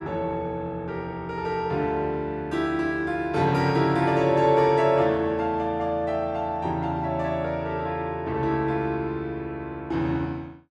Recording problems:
none

